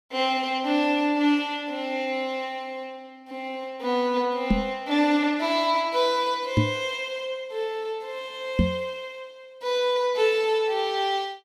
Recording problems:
microphone thump; at 4.5 s, at 6.5 s and at 8.5 s; peak +8 dB vs average level

